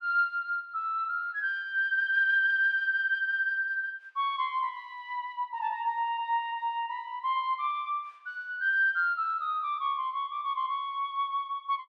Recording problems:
none

